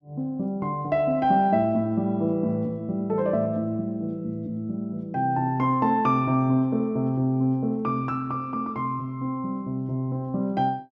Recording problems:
none

